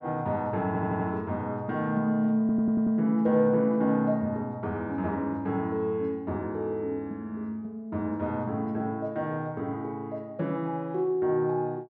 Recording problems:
stutter; at 0.5 s and at 2.5 s

